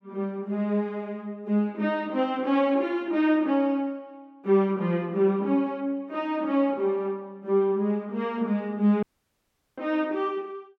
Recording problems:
dropout; at 9 s for 0.5 s

